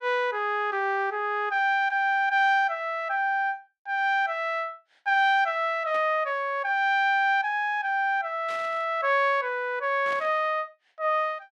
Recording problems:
static burst; at 6 s, at 8.5 s and at 10 s; peak -12 dB vs average level

